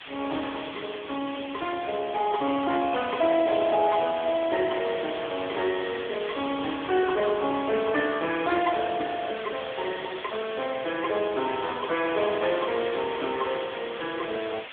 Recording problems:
phone line; 260 Hz to 3.4 kHz, AMR-NB
background hiss; SNR 12 dB
crackle; 4 times, first at 1 s; loose cable, SNR 22 dB

